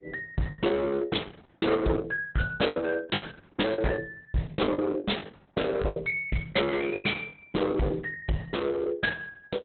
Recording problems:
lossy compression; Opus, log-spectral distance 4 dB, nothing above 4 kHz
distortion; hard clipping, uneven, signal-to-distortion ratio 6 dB
lost packets; 12% of the sound replaced, filled with the last packet

